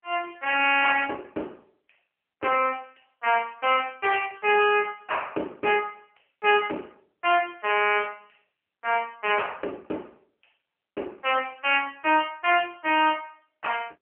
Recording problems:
phone line; 280 Hz to 3 kHz, AMR-NB

